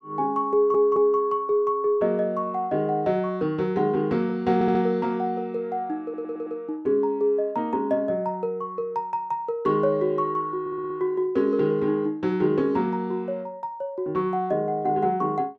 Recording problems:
stutter; 4 times, first at 0.5 s

